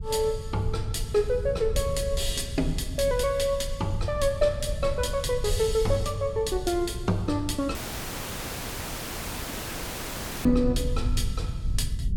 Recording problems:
low-frequency rumble; below 90 Hz, SNR 6 dB
dropout; at 8 s for 2.5 s

